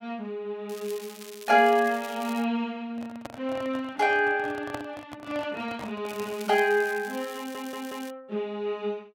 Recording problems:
crackling; from 0.5 to 2.5 s and from 6 to 8 s; loose cable, SNR 17 dB
handling noise; from 3 to 6.5 s; peak -5 dB vs average level
stutter; at 7.5 s

